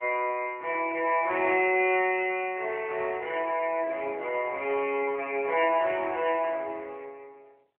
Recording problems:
phone line; 300 Hz to 3 kHz, AMR-NB

